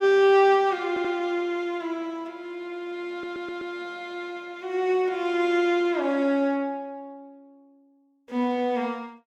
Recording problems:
audio stuttering; at 1 s and at 3 s

